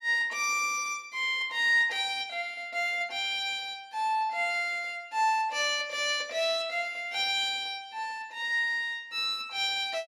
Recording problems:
none

